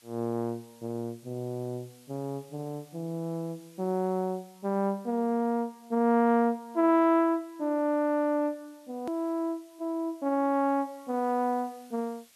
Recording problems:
hiss; slope +2 dB per octave, SNR 29 dB
hard cut with a click; at 9 s

